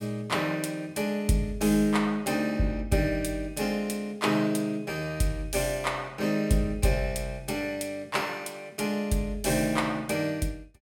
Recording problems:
none

